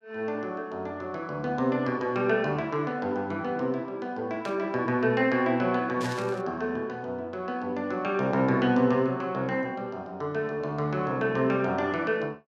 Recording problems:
static burst; at 4.5 s and at 6 s; peak -7 dB vs average level

